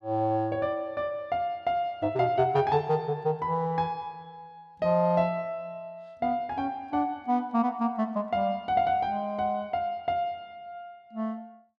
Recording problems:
none

